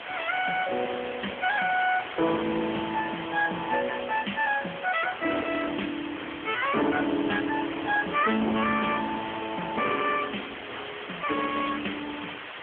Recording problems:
phone line; 240 Hz to 3.3 kHz, AMR-NB
distortion; soft clipping, signal-to-distortion ratio 8 dB
hiss; SNR 7 dB

